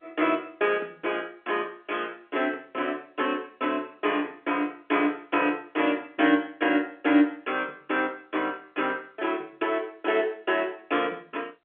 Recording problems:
telephone audio; 260 Hz to 3.4 kHz, G.711

